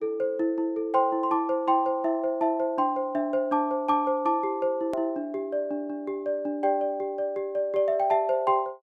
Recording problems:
edit click; at 5 s

